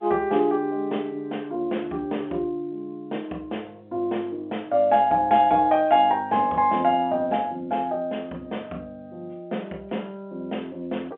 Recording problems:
phone line; 260 Hz to 3.5 kHz, G.711

